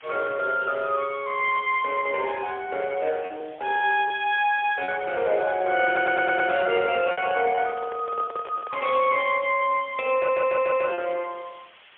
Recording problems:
phone line; 340 Hz to 3.5 kHz, AMR-NB, then MP3
hiss; SNR 26 dB
lost packets; 4% of the sound replaced, filled with repeated pitch periods
microphone handling noise; from 5 to 9 s; peak -8 dB vs average level
stutter; at 6 s and at 10 s

